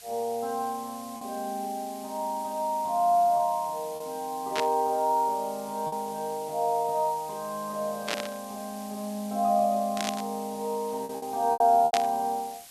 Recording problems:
hiss; slope +2 dB per octave, SNR 17 dB
packet loss; 3% of the sound replaced, filled with repeated pitch periods
burst of static; 4 times, first at 4.5 s; peak +3 dB vs average level

